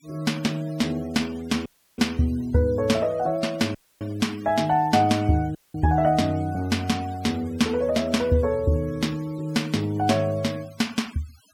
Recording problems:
noise reduction artefacts; signal-to-artefact ratio 23 dB
audio cutting out; at 1.5 s, at 4 s and at 5.5 s

